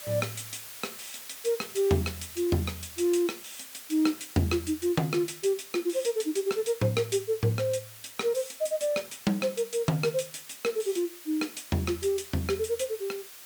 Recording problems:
hiss; slope +1 dB per octave, SNR 14 dB

